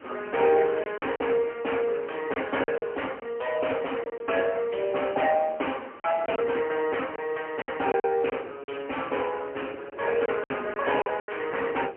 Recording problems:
telephone audio; 320 Hz to 3.1 kHz, AMR-NB, then MP3
background hiss; SNR 26 dB
wind on the microphone; below 520 Hz, SNR 22 dB
lost packets; 7% of the sound replaced, filled with silence

